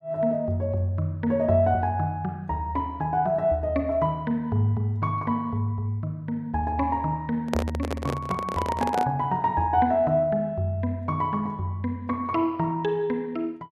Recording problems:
handling noise; from 7.5 to 9 s; peak +2 dB vs average level

